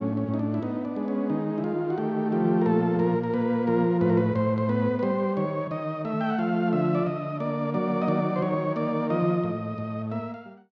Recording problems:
none

